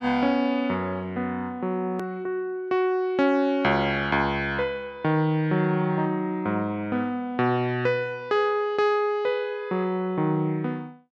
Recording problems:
click at an edit; at 2 s

